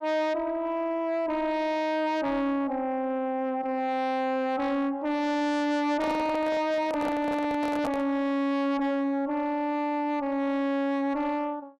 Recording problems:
distortion; soft clipping, signal-to-distortion ratio 7 dB
microphone handling noise; from 6 to 8 s; peak -1 dB vs average level

